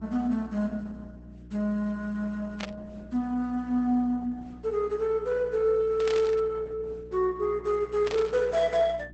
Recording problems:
codec artefacts; Opus, log-spectral distance 2 dB, nothing above 8 kHz
hum; 60 Hz, harmonics up to 360 Hz, SNR 20 dB
burst of static; at 2.5 s, at 6 s and at 8 s; peak -4 dB vs average level

